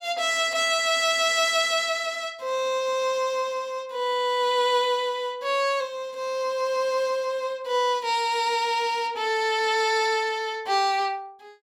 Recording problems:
none

